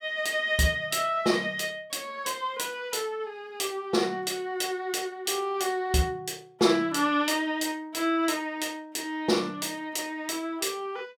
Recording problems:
none

